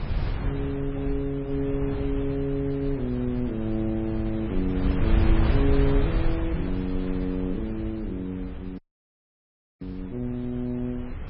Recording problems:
codec artefacts; MP3, log-spectral distance 2 dB
wind noise; below 100 Hz, SNR 1 dB
audio cutting out; at 9 s for 1 s

